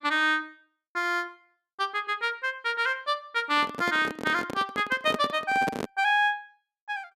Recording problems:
microphone handling noise; from 3.5 to 6 s; peak 0 dB vs average level

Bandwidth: 14.5 kHz